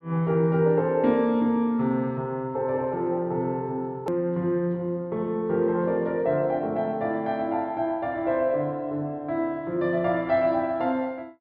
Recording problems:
treble cut off; nothing above 5.5 kHz
click at an edit; at 4 s

